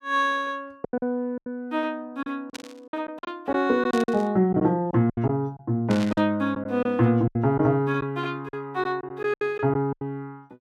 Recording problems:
lost packets; 10% of the sound replaced, filled with silence
static burst; at 2.5 s, at 4 s and at 6 s; peak -6 dB vs average level

